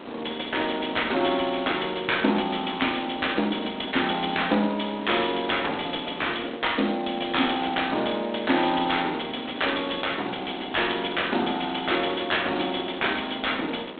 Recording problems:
telephone audio; 190 Hz to 3.6 kHz, G.726
wind on the microphone; below 1.2 kHz, SNR 14 dB

